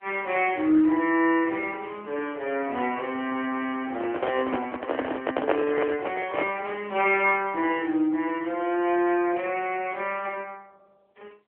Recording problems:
phone line; 280 Hz to 3.3 kHz, AMR-NB
handling noise; from 4 to 6.5 s; peak +6 dB vs average level

